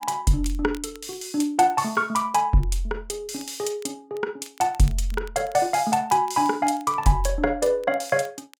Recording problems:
crackling; vinyl, SNR 27 dB

